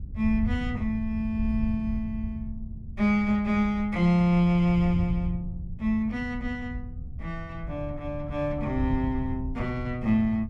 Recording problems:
wind noise; below 100 Hz, SNR 9 dB

